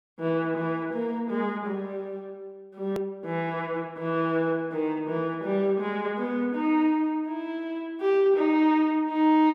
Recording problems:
hard cut with a click; at 3 s

